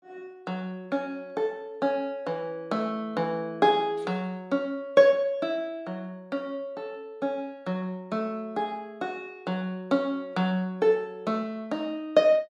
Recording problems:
none

